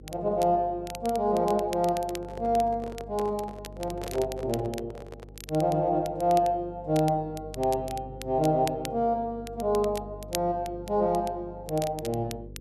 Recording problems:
electrical hum; 50 Hz, harmonics up to 500 Hz, SNR 18 dB
crackle; vinyl, SNR 17 dB
handling noise; from 2 to 5.5 s; peak -7 dB vs average level

